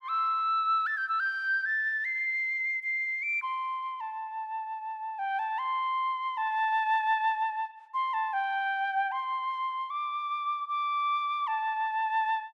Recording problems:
none

